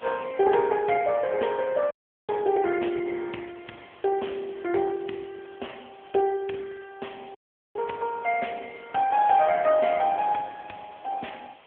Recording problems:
telephone audio; 280 Hz to 3.3 kHz, AMR-NB
hiss; SNR 27 dB
audio cutting out; at 2 s and at 7.5 s

